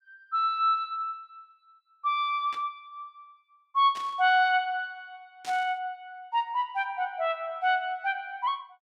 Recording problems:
burst of static; at 2.5 s, at 4 s and at 5.5 s; peak -10 dB vs average level

